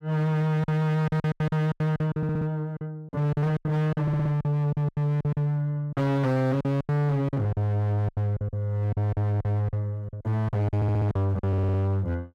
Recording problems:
distorted audio; hard clipping, signal-to-distortion ratio 6 dB
packet loss; 15% of the sound replaced, filled with silence
stutter; 4 times, first at 2 s

